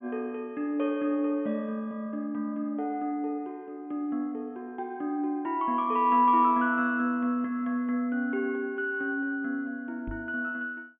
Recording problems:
treble missing; nothing above 3.4 kHz
knock on the microphone; at 10 s; peak -3 dB vs average level

